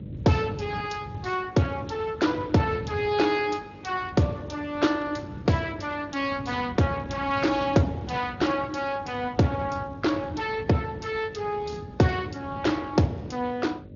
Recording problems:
treble missing; nothing above 6.9 kHz
lossy compression; Speex, log-spectral distance 4 dB
hum; 50 Hz, harmonics up to 600 Hz, SNR 20 dB
rumble; below 200 Hz, SNR 14 dB

